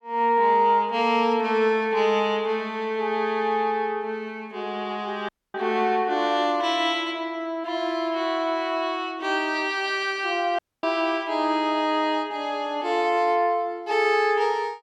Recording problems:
audio cutting out; at 5.5 s and at 11 s

